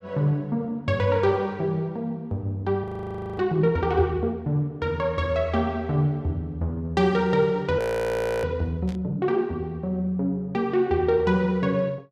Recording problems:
audio freezing; at 3 s for 0.5 s and at 8 s for 0.5 s
burst of static; at 9 s; peak -17 dB vs average level

